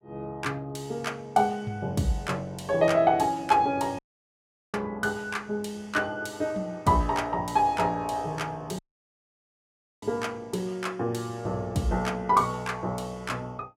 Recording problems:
dropout; at 4 s for 1 s and at 9 s for 1 s

